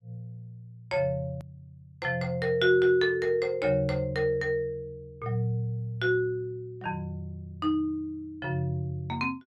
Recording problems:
edit click; at 1.5 s

